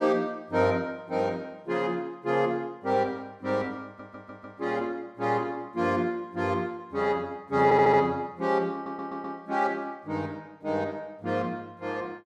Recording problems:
stutter; at 4 s, at 7.5 s and at 8.5 s

